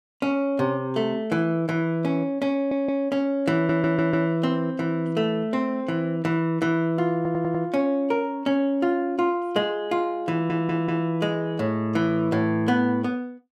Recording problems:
stutter; 4 times, first at 2.5 s

